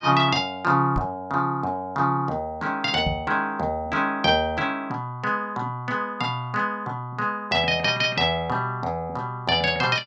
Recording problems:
knock on the microphone; at 1 s and at 3 s; peak 0 dB vs average level

